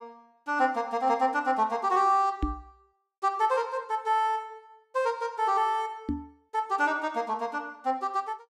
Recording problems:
knock on the microphone; at 2.5 s and at 6 s; peak +2 dB vs average level

